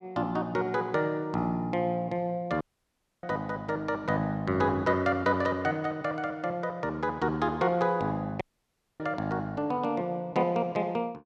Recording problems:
audio cutting out; at 2.5 s for 0.5 s and at 8.5 s for 0.5 s

